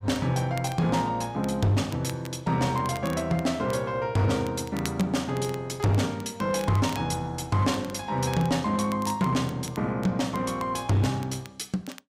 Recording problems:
distorted audio; hard clipping, signal-to-distortion ratio 12 dB
crackle; vinyl, SNR 20 dB

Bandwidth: 15.5 kHz